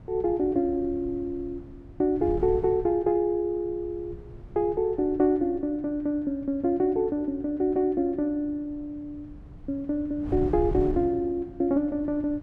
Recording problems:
wind noise; below 150 Hz, SNR 15 dB

